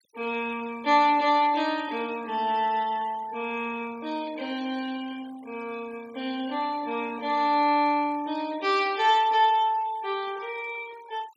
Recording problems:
denoising artefacts; signal-to-artefact ratio 23 dB

